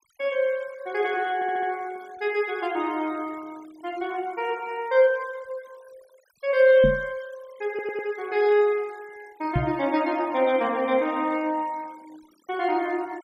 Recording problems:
denoising artefacts; signal-to-artefact ratio 24 dB
stutter; at 1.5 s and at 7.5 s
microphone thump; at 7 s and at 9.5 s; peak +4 dB vs average level

